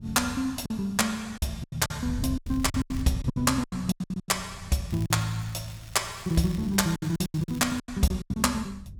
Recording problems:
wind noise; below 130 Hz, SNR 13 dB
packet loss; 14% of the sound replaced, filled with silence
crackling; at 2.5 s and from 5 to 8 s; loose cable, SNR 21 dB

